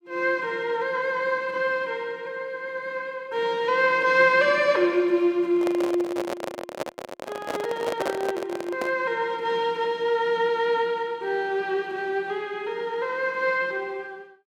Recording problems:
microphone handling noise; from 5.5 to 9 s; peak 0 dB vs average level

